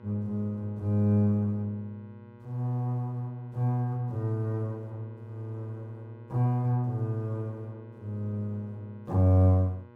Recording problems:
hum; 60 Hz, harmonics up to 2 kHz, SNR 22 dB

